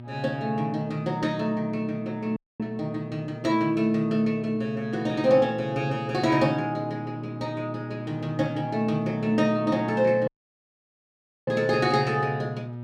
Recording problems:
electrical hum; 60 Hz, harmonics up to 960 Hz, SNR 12 dB
audio cutting out; at 2.5 s and at 10 s for 1 s

